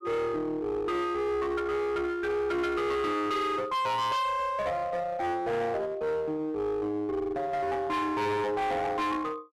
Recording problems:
distorted audio; hard clipping, uneven, signal-to-distortion ratio 7 dB

